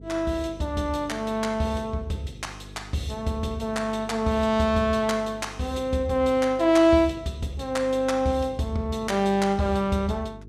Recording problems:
electrical hum; 50 Hz, harmonics up to 450 Hz, SNR 19 dB

